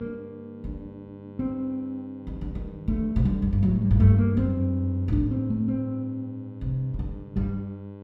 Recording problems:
hum; 50 Hz, harmonics up to 1.1 kHz, SNR 18 dB

